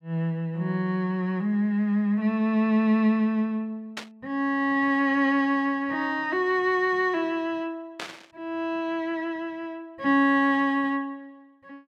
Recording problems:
burst of static; at 4 s and at 8 s; peak -5 dB vs average level

